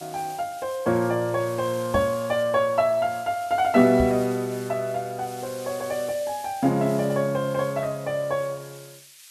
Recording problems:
hiss; SNR 19 dB
microphone bump; at 2 s and at 4 s; peak -1 dB vs average level

